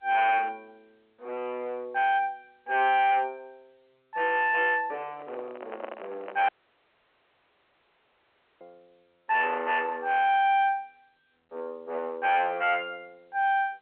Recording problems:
telephone audio; 390 Hz to 2.3 kHz, G.711
distorted audio; hard clipping, signal-to-distortion ratio 8 dB
microphone handling noise; from 5 to 6.5 s; peak -7 dB vs average level
audio cutting out; at 6.5 s for 2 s

